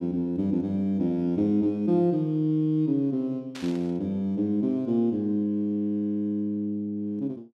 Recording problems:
burst of static; at 3.5 s; peak -10 dB vs average level

